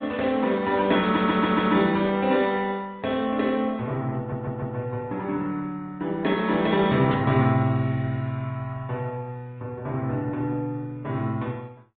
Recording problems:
treble missing; nothing above 3.7 kHz
lossy codec; Opus, log-spectral distance 2 dB
audio stuttering; at 1 s and at 4 s
burst of static; at 7 s; peak -10 dB vs average level

